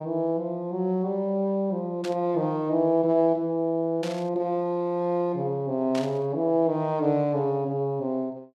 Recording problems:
burst of static; at 2 s, at 4 s and at 6 s; peak -7 dB vs average level

